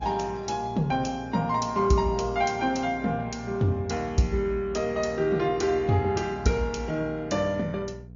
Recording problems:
treble missing; nothing above 7 kHz
lossy compression; Opus, log-spectral distance 3 dB
hum; 60 Hz, harmonics up to 480 Hz, SNR 18 dB

